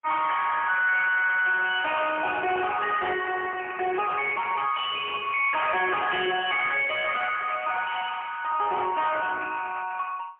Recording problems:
phone line; 320 Hz to 3.3 kHz, AMR-NB, then MP3
distorted audio; hard clipping, uneven, signal-to-distortion ratio 9 dB
burst of static; at 2.5 s, at 5 s and at 9 s; peak -13 dB vs average level

